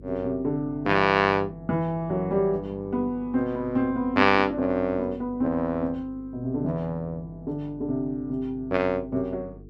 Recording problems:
electrical hum; 50 Hz, harmonics up to 450 Hz, SNR 20 dB

